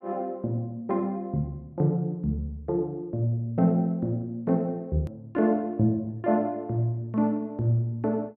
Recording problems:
edit click; at 5 s

